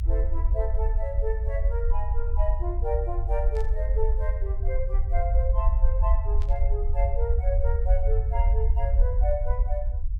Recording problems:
low-frequency rumble; below 58 Hz, SNR -7 dB
burst of static; at 3.5 s and at 6.5 s; peak -11 dB vs average level

